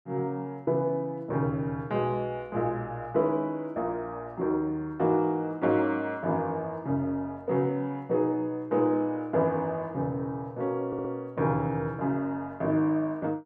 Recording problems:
stutter; at 11 s

